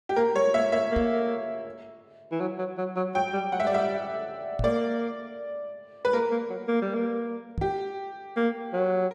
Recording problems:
knock on the microphone; at 1 s, at 4.5 s and at 7.5 s; peak +1 dB vs average level

